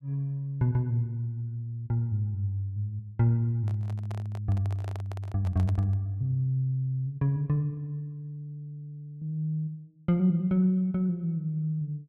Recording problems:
microphone handling noise; from 3.5 to 6 s; peak -10 dB vs average level

